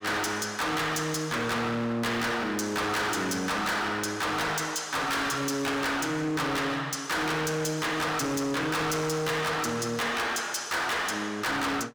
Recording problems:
distortion; hard clipping, signal-to-distortion ratio 6 dB

